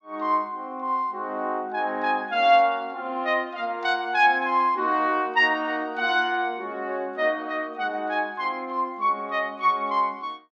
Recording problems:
none

